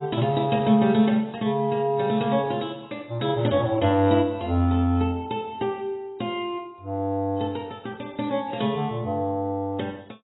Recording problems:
lossy compression; AAC, log-spectral distance 4 dB, nothing above 3.8 kHz

